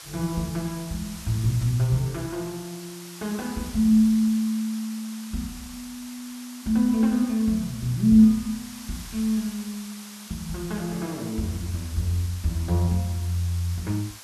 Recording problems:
background hiss; SNR 16 dB

